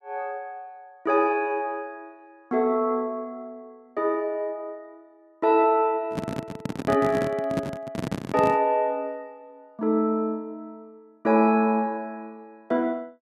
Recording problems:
handling noise; from 6 to 8.5 s; peak 0 dB vs average level

